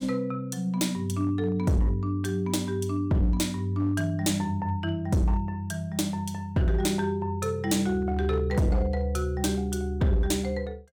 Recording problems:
distortion; hard clipping, signal-to-distortion ratio 11 dB

